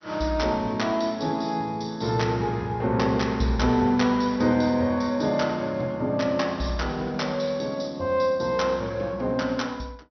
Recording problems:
treble cut off; nothing above 6 kHz

